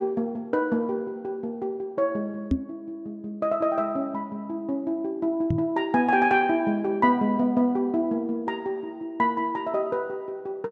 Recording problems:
microphone bump; at 2.5 s and at 5.5 s; peak +5 dB vs average level

